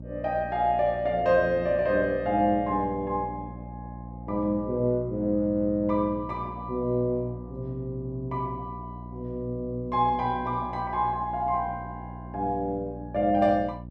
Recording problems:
hum; 60 Hz, harmonics up to 600 Hz, SNR 13 dB

